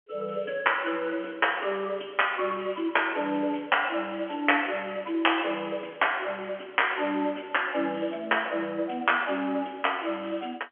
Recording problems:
telephone audio; 240 Hz to 3.3 kHz, G.711

